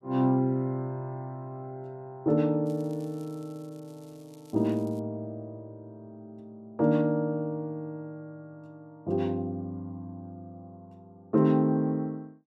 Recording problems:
crackling; from 2.5 to 5 s; loose cable, SNR 29 dB

